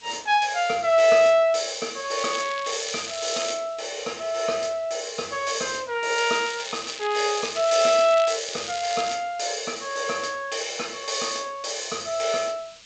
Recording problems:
lossy compression; G.722, log-spectral distance 9 dB
hiss; SNR 25 dB
crackle; from 2 to 3.5 s and from 6 to 9 s; loose cable, SNR 12 dB

